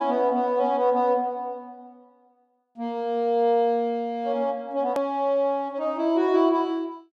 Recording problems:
hard cut with a click; at 5 s

